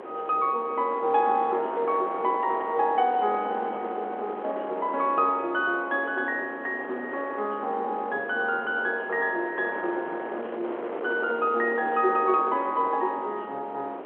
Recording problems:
phone line; 300 Hz to 3.4 kHz, G.711
wind on the microphone; below 860 Hz, SNR 11 dB

